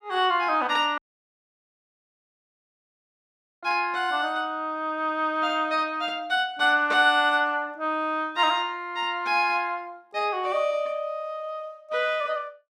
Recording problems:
audio cutting out; at 1 s for 2.5 s

